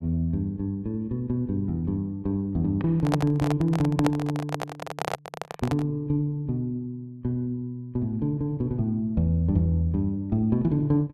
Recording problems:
microphone handling noise; from 3 to 6 s; peak +3 dB vs average level

